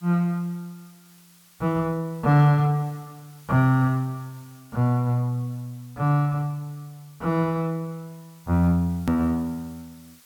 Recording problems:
background hiss; slope +1 dB per octave, SNR 29 dB
hard cut with a click; at 9 s

